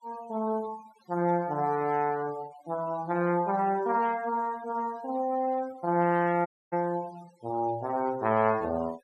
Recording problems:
noise reduction artefacts; signal-to-artefact ratio 22 dB
audio cutting out; at 6.5 s

